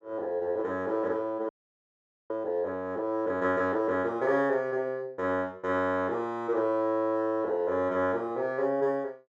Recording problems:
audio freezing; at 1.5 s for 1 s

